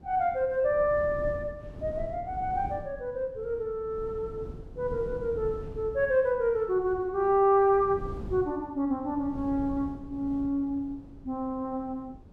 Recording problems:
wind noise; below 220 Hz, SNR 15 dB

